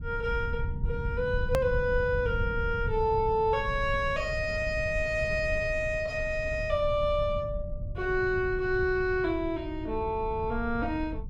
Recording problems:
low-frequency rumble; below 100 Hz, SNR 8 dB
edit click; at 1.5 s

